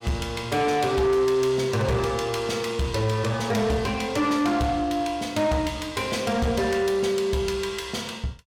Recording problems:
distortion; soft clipping, signal-to-distortion ratio 11 dB

